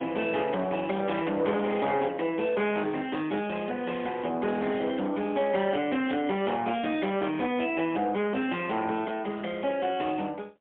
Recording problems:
phone line; 240 Hz to 3.4 kHz, AMR-NB, then MP3
distorted audio; soft clipping, signal-to-distortion ratio 9 dB

